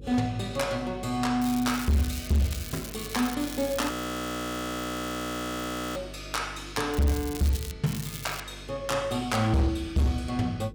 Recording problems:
distortion; hard clipping, signal-to-distortion ratio 10 dB
hum; 50 Hz, harmonics up to 500 Hz, SNR 16 dB
crackle; 4 times, first at 1.5 s; loose cable, SNR 11 dB
frozen audio; at 4 s for 2 s

